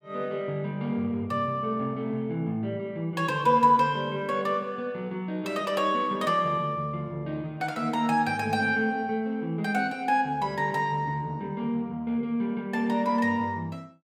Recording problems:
none

